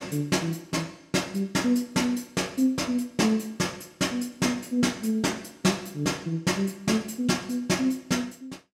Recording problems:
none

